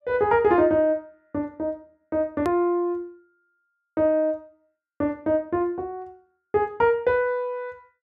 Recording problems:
hard cut with a click; at 2.5 s

